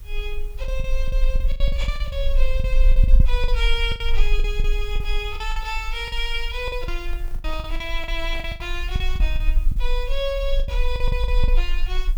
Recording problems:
background hiss; slope -3 dB per octave, SNR 22 dB
rumble; below 40 Hz, strongest tone 24 Hz, SNR -4 dB
packet loss; 14% of the sound replaced, filled with the last packet
microphone handling noise; from 7 to 8.5 s; peak -10 dB vs average level

